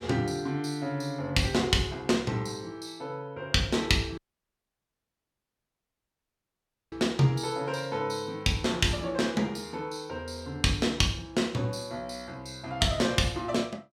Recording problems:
dropout; at 4 s for 2.5 s

